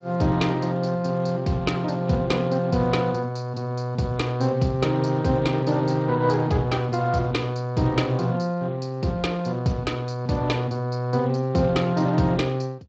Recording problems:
lossy compression; Speex, log-spectral distance 3 dB

